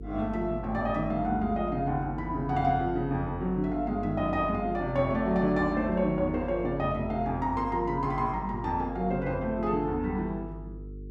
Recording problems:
electrical hum; 50 Hz, harmonics up to 450 Hz, SNR 12 dB

